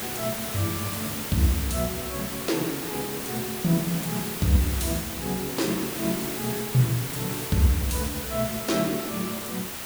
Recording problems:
hiss; slope -2 dB per octave, SNR 4 dB

